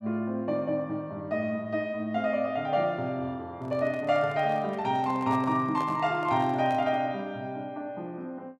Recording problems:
microphone handling noise; from 3.5 to 7 s; peak -7 dB vs average level

